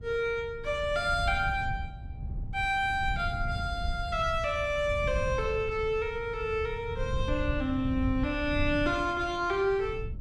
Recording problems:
wind on the microphone; below 110 Hz, SNR 8 dB

